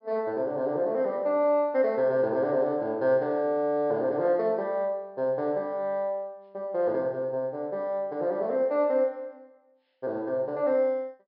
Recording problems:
low-pass filter; nothing above 5.5 kHz

